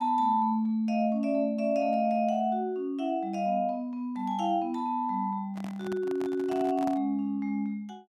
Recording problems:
microphone handling noise; from 5.5 to 7 s; peak -6 dB vs average level

